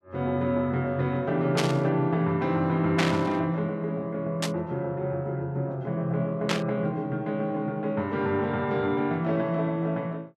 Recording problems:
static burst; 4 times, first at 1.5 s; peak +4 dB vs average level

